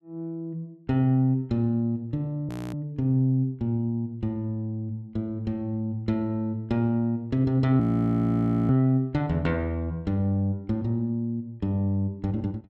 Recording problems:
frozen audio; at 2.5 s and at 8 s for 1 s

